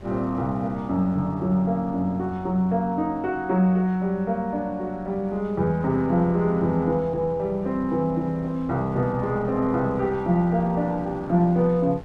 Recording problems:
wind on the microphone; below 420 Hz, SNR 22 dB

